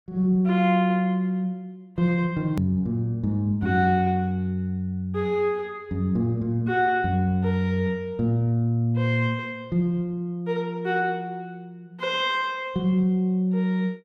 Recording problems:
hard cut with a click; at 2.5 s

